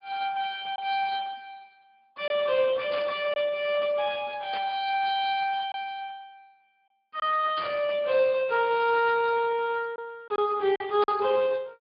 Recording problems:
low-pass filter; nothing above 4.2 kHz
codec artefacts; Speex, log-spectral distance 3 dB
packet loss; 2% of the sound replaced, filled with silence
burst of static; 4 times, first at 3 s; peak -6 dB vs average level

